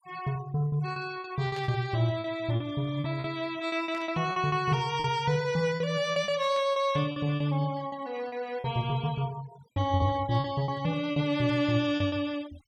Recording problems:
denoising artefacts; signal-to-artefact ratio 20 dB
lost packets; 10% of the sound replaced, filled with repeated pitch periods
burst of static; at 1.5 s, at 4 s and at 6.5 s; peak -12 dB vs average level

